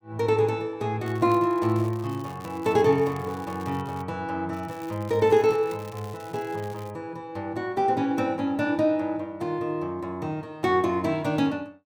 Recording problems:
crackling; from 1 to 4 s and from 4.5 to 7 s; loose cable, SNR 24 dB

